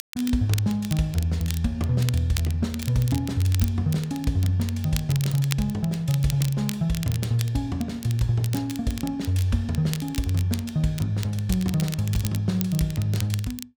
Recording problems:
crackle; vinyl, SNR 13 dB

